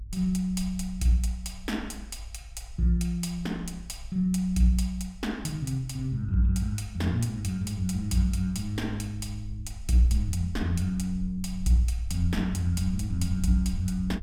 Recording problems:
rumble; below 56 Hz, SNR 13 dB

